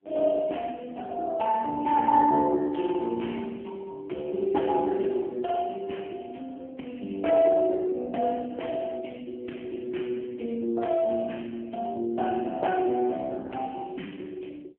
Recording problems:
telephone audio; 190 Hz to 3.3 kHz, AMR-NB

